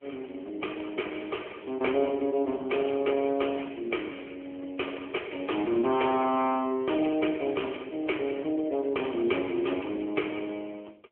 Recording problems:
phone line; 280 Hz to 3.2 kHz, AMR-NB

